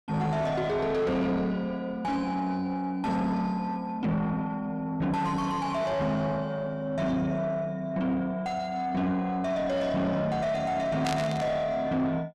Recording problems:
distortion; soft clipping, signal-to-distortion ratio 7 dB
burst of static; at 11 s; peak -1 dB vs average level

